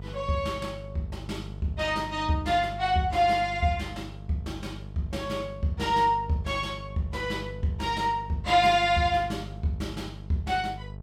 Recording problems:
mains hum; 50 Hz, harmonics up to 850 Hz, SNR 13 dB

